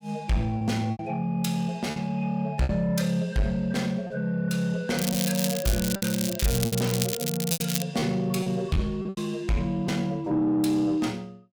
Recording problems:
distorted audio; soft clipping, signal-to-distortion ratio 11 dB
packet loss; 6% of the sound replaced, filled with repeated pitch periods
crackle; from 5 to 8 s; loose cable, SNR 3 dB

